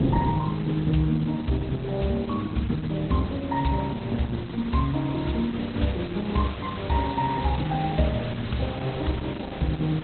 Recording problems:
lossy codec; Opus, log-spectral distance 12 dB, nothing above 4.1 kHz
hiss; SNR 14 dB
wind on the microphone; below 270 Hz, SNR 9 dB

